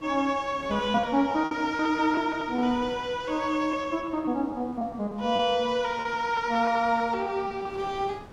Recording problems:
wind on the microphone; below 760 Hz, SNR 20 dB
lost packets; 8% of the sound replaced, filled with repeated pitch periods

